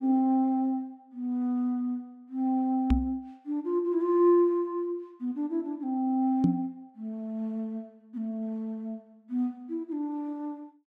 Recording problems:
microphone thump; at 3 s and at 6.5 s; peak +8 dB vs average level

